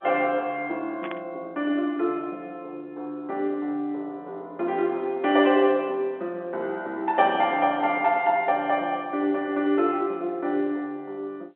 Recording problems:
telephone audio; 220 Hz to 3.6 kHz, G.711
static burst; at 1 s; peak -7 dB vs average level

